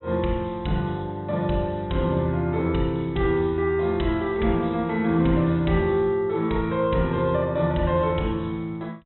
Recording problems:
low-pass filter; nothing above 3.9 kHz

